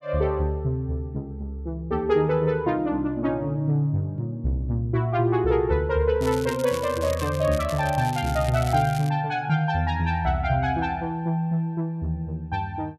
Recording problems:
crackle; from 6 to 9 s; loose cable, SNR 15 dB

